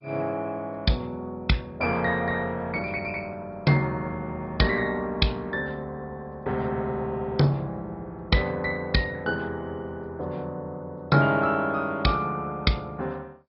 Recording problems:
low-pass filter; nothing above 5.3 kHz
lossy codec; MP2, log-spectral distance 2 dB

